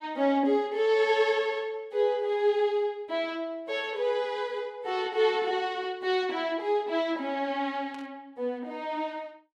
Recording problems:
burst of static; at 8 s; peak -16 dB vs average level

